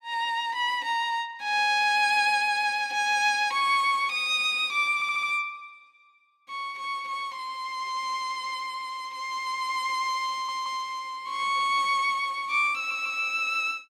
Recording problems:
audio stuttering; at 5 s, at 10 s and at 13 s

